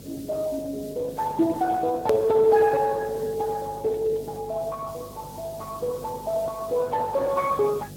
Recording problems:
lossy codec; Vorbis, then Speex, log-spectral distance 3 dB, nothing above 16.6 kHz
hum; 50 Hz, harmonics up to 600 Hz, SNR 18 dB
hiss; slope +4 dB per octave, SNR 23 dB
click at an edit; at 2 s

